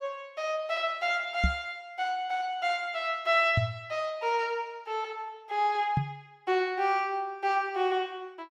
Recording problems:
knock on the microphone; at 1.5 s, at 3.5 s and at 6 s; peak +6 dB vs average level

